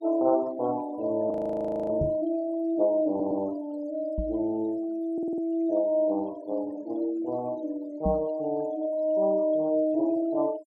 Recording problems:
denoising artefacts; signal-to-artefact ratio 25 dB
audio freezing; at 1.5 s for 0.5 s
microphone thump; at 2 s, at 4 s and at 8 s; peak +1 dB vs average level
audio stuttering; at 3 s and at 5 s

